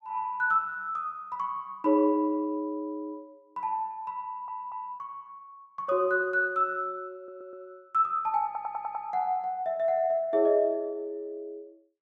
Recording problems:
audio stuttering; at 4 s, at 7 s and at 8.5 s

